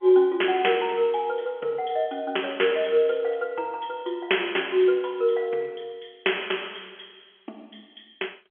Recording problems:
phone line; 280 Hz to 3.3 kHz, G.711

